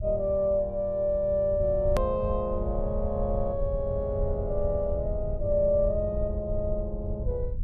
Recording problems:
low-frequency rumble; below 86 Hz, SNR 6 dB
edit click; at 2 s

